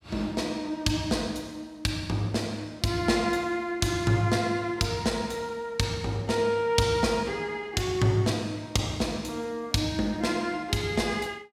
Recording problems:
none

